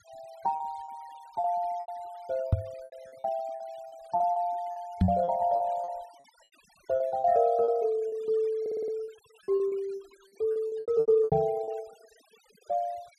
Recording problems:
denoising artefacts; signal-to-artefact ratio 27 dB
lost packets; 14% of the sound replaced, filled with repeated pitch periods
microphone thump; at 2.5 s, at 5 s and at 11 s; peak +9 dB vs average level
stutter; at 8.5 s

